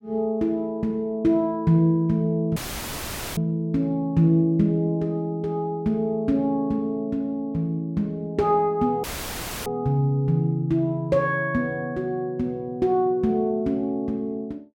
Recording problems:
dropout; at 2.5 s for 1 s and at 9 s for 0.5 s; filled with static

